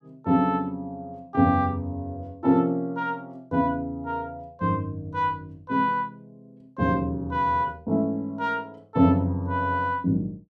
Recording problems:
none

